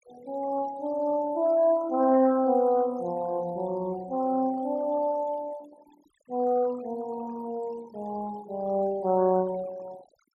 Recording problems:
denoising artefacts; signal-to-artefact ratio 22 dB

